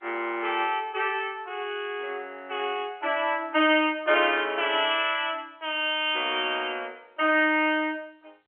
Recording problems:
telephone audio; 260 Hz to 3.2 kHz, G.711

